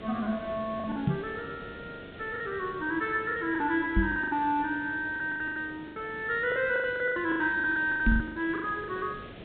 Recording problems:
low-pass filter; nothing above 4 kHz
hiss; SNR 16 dB
packet loss; 15% of the sound replaced, filled with the last packet
knock on the microphone; at 1 s, at 4 s and at 8 s; peak +7 dB vs average level

